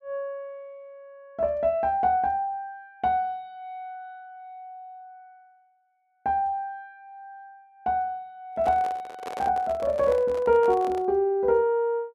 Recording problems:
microphone handling noise; from 8.5 to 11 s; peak -6 dB vs average level

